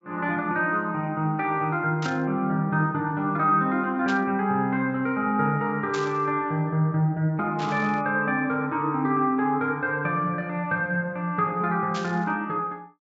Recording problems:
treble missing; nothing above 8 kHz
static burst; 5 times, first at 2 s; peak -6 dB vs average level

